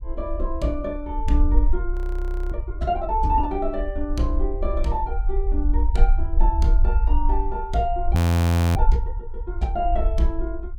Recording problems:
rumble; below 68 Hz, SNR -2 dB
frozen audio; at 2 s for 0.5 s and at 8 s for 0.5 s

